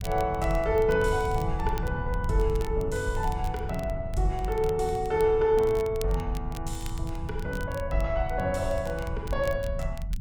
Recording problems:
rumble; below 96 Hz, SNR 7 dB
crackle; vinyl, SNR 21 dB

